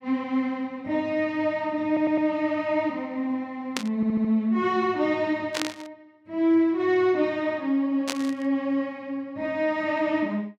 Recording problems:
stutter; at 2 s and at 4 s
burst of static; at 4 s, at 5.5 s and at 8 s; peak +1 dB vs average level

